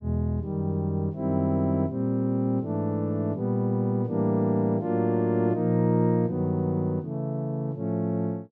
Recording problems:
none

